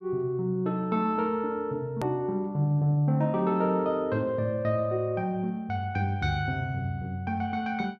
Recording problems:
hard cut with a click; at 2 s

